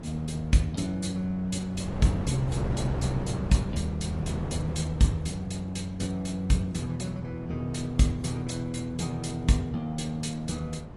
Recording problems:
codec artefacts; AAC, log-spectral distance 2 dB, nothing above 10.4 kHz
wind noise; below 410 Hz, SNR 9 dB

